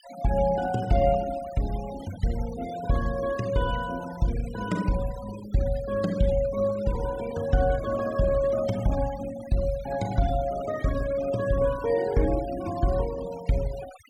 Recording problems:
noise reduction artefacts; signal-to-artefact ratio 17 dB

